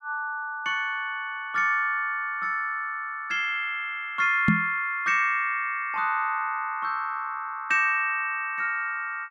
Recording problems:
knock on the microphone; at 4.5 s; peak +7 dB vs average level

